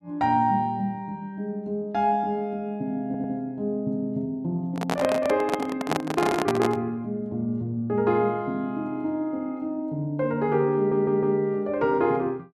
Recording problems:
stutter; at 3 s and at 11 s
handling noise; from 4.5 to 7 s; peak +4 dB vs average level

